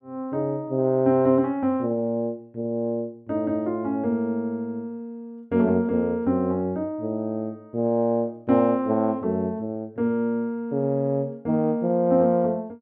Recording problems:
none

